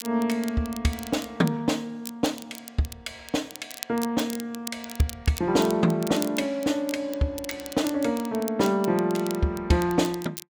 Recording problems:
crackle; vinyl, SNR 14 dB

